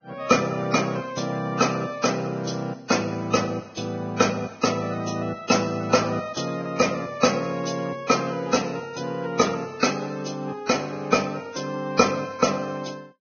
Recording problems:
lossy codec; Vorbis, log-spectral distance 5 dB, nothing above 6.5 kHz

